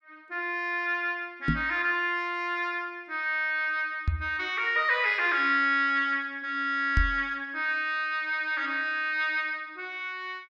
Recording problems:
knock on the microphone; at 1.5 s, at 4 s and at 7 s; peak +5 dB vs average level

